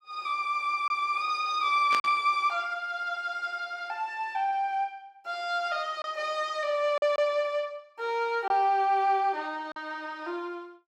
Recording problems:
lost packets; 1.9% of the sound replaced, filled with silence
burst of static; at 2 s; peak -1 dB vs average level

